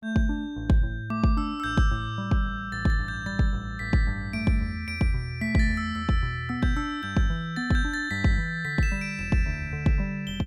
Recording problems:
none

